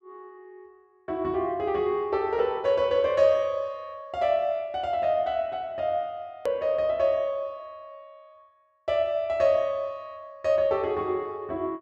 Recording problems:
click at an edit; at 6.5 s

